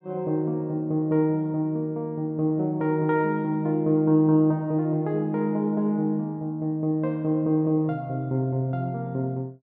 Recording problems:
none

